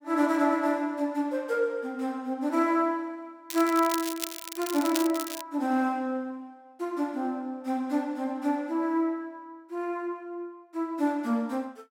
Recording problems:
crackling; from 3.5 to 5.5 s; loose cable, SNR 7 dB

